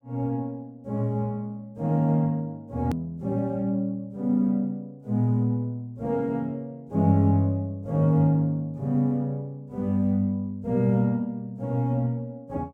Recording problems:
click at an edit; at 3 s

